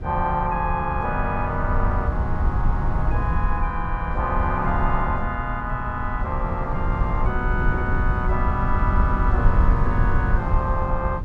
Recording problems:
low-frequency rumble; below 88 Hz, SNR -1 dB
wind noise; below 320 Hz, SNR 15 dB

